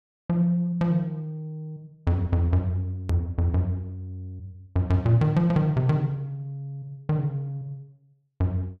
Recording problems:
click at an edit; at 3 s

